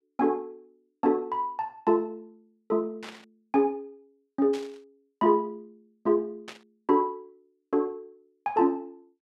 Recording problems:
burst of static; at 3 s, at 4.5 s and at 6.5 s; peak -9 dB vs average level

